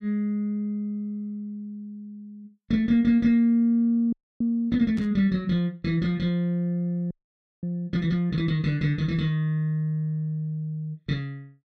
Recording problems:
frozen audio; at 4 s and at 7 s for 0.5 s
static burst; at 5 s; peak -17 dB vs average level

